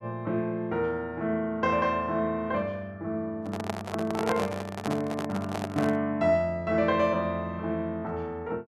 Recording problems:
handling noise; from 3.5 to 6 s; peak +3 dB vs average level

